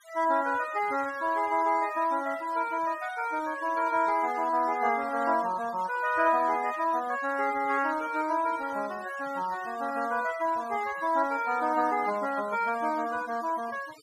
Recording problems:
denoising artefacts; signal-to-artefact ratio 20 dB

